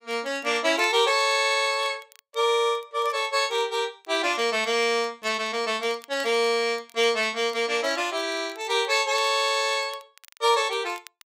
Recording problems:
crackling; vinyl, SNR 27 dB

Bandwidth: 15.5 kHz